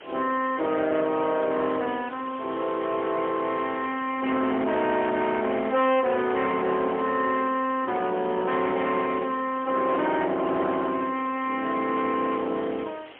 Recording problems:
phone line; 240 Hz to 3.4 kHz, AMR-NB, then MP3
distortion; hard clipping, signal-to-distortion ratio 11 dB
background hiss; SNR 19 dB

